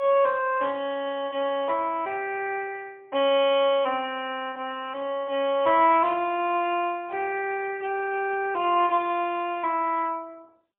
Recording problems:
telephone audio; 320 Hz to 3.3 kHz, AMR-NB, then MP3

